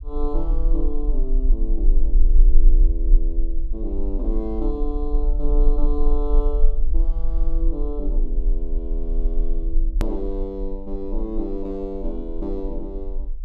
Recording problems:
low-frequency rumble; below 34 Hz, strongest tone 22 Hz, SNR -7 dB
hard cut with a click; at 10 s

